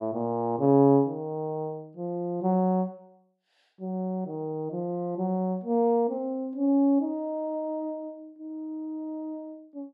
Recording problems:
none

